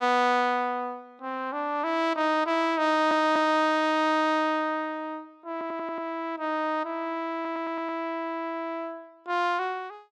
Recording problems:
audio stuttering; at 3 s, at 5.5 s and at 7.5 s

